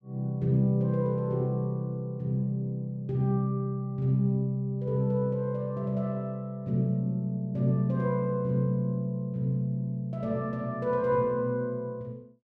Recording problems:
none

